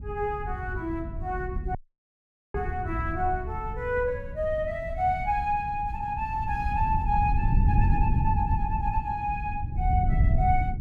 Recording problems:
wind noise; below 110 Hz, SNR 1 dB
dropout; at 2 s for 1 s

